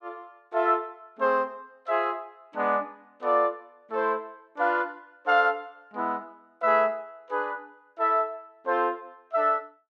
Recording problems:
none

